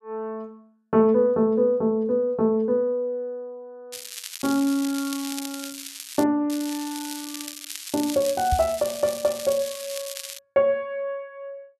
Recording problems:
crackling; from 4 to 6 s and from 6.5 to 10 s; loose cable, SNR 11 dB
knock on the microphone; at 8.5 s; peak +2 dB vs average level

